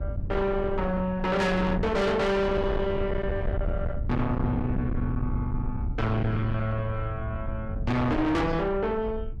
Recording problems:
distortion; soft clipping, signal-to-distortion ratio 6 dB
low-frequency rumble; below 180 Hz, SNR 5 dB

